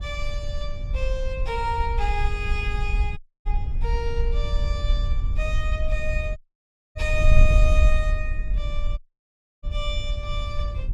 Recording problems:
wind noise; below 60 Hz, SNR -4 dB
dropout; at 3 s, at 6.5 s for 0.5 s and at 9 s for 0.5 s

